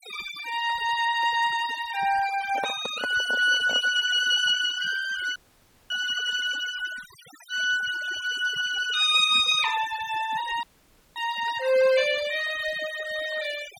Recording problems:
noise reduction artefacts; signal-to-artefact ratio 16 dB
microphone handling noise; from 2.5 to 4 s; peak -4 dB vs average level
dropout; at 5.5 s for 0.5 s and at 11 s for 0.5 s

